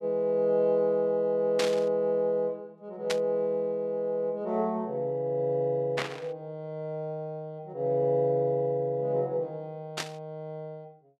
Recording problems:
burst of static; 4 times, first at 1.5 s; peak +2 dB vs average level

